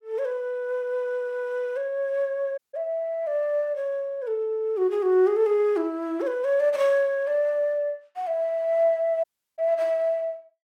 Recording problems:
audio cutting out; at 2.5 s and at 9 s

